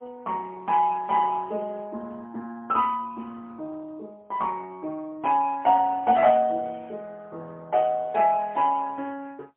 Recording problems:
telephone audio; 240 Hz to 3.4 kHz, AMR-NB, then MP3

